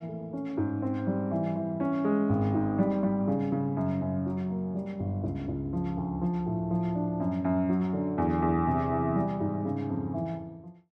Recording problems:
none

